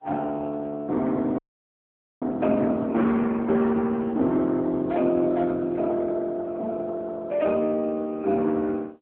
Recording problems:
phone line; 170 Hz to 3.8 kHz, AMR-NB
audio freezing; at 1.5 s for 1 s

